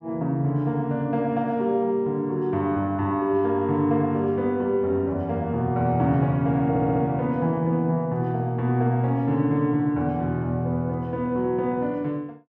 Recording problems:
audio stuttering; at 6.5 s

